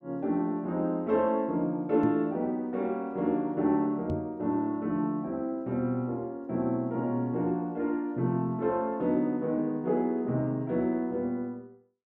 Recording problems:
knock on the microphone; at 2 s and at 4 s; peak -1 dB vs average level

